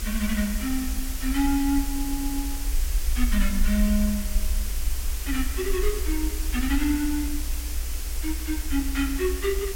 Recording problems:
background hiss; SNR 7 dB
low-frequency rumble; below 60 Hz, SNR 3 dB
stutter; at 2 s

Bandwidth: 16.5 kHz